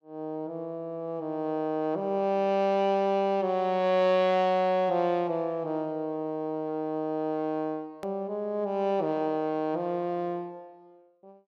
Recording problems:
hard cut with a click; at 8 s

